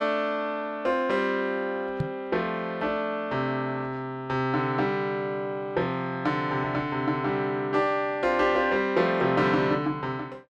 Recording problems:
knock on the microphone; at 2 s; peak +2 dB vs average level

